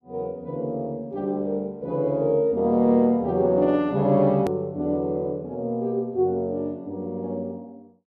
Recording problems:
hard cut with a click; at 4.5 s

